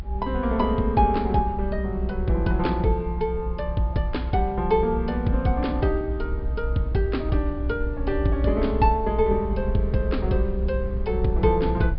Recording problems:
treble cut off; nothing above 5 kHz
rumble; below 64 Hz, SNR 5 dB

